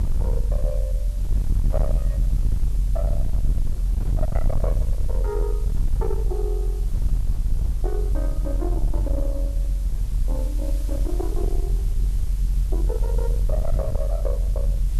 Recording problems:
distortion; soft clipping, signal-to-distortion ratio 7 dB
background hiss; slope +2 dB per octave, SNR 15 dB
rumble; below 48 Hz, strongest tone 44 Hz, SNR -8 dB

